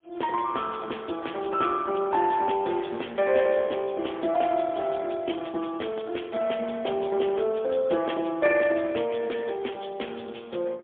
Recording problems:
phone line; 280 Hz to 3.4 kHz, AMR-NB, then MP3

